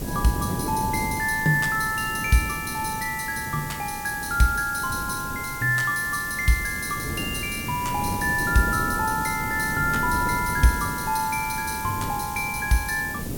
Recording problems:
background hiss; slope -1 dB per octave, SNR 12 dB
wind on the microphone; below 320 Hz, SNR 9 dB

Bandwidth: 17 kHz